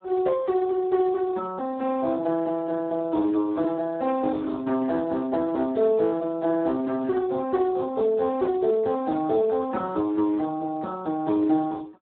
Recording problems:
telephone audio; 220 Hz to 2 kHz, Speex

